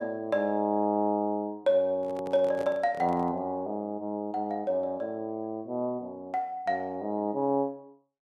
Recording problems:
handling noise; from 2 to 3.5 s; peak -8 dB vs average level

